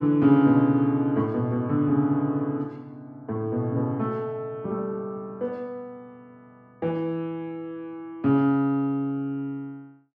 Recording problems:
none

